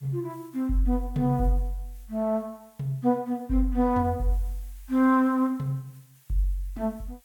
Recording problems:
hiss; SNR 29 dB

